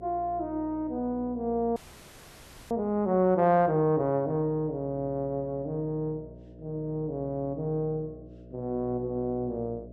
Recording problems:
mains hum; 60 Hz, harmonics up to 660 Hz, SNR 19 dB
audio freezing; at 2 s for 1 s

